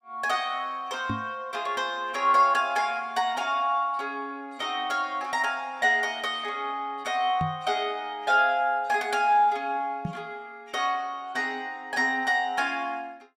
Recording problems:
microphone thump; at 1 s, at 7.5 s and at 10 s; peak -1 dB vs average level

